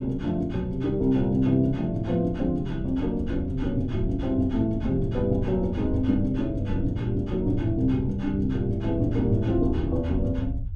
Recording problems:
low-frequency rumble; below 84 Hz, SNR 11 dB

